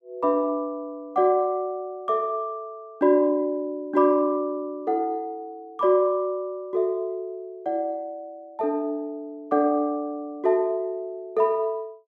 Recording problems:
none

